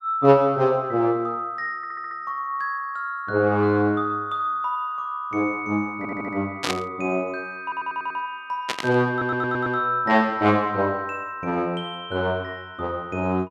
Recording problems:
stutter; 4 times, first at 2 s
burst of static; at 6.5 s and at 8.5 s; peak +3 dB vs average level

